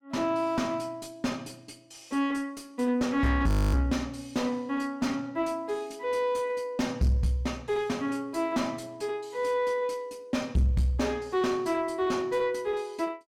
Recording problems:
distorted audio; soft clipping, signal-to-distortion ratio 9 dB
audio freezing; at 3.5 s

